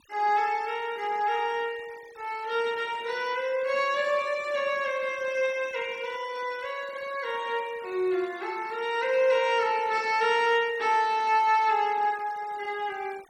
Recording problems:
noise reduction artefacts; signal-to-artefact ratio 23 dB

